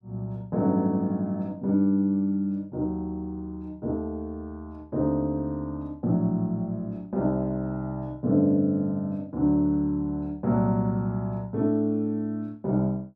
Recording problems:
none

